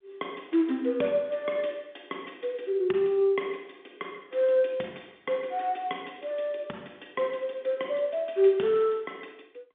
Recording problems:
phone line; 220 Hz to 3.6 kHz, G.711

